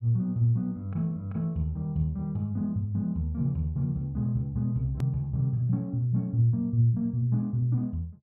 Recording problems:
click at an edit; at 5 s

